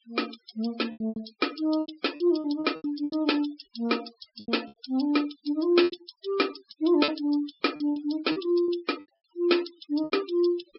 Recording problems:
low-pass filter; nothing above 5.4 kHz
noise reduction artefacts; signal-to-artefact ratio 18 dB
lost packets; 13% of the sound replaced, filled with repeated pitch periods

